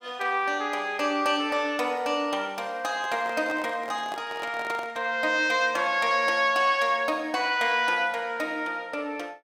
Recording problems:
handling noise; from 3 to 5 s; peak -7 dB vs average level

